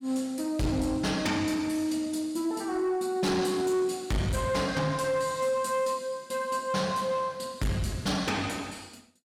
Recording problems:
distorted audio; soft clipping, signal-to-distortion ratio 10 dB

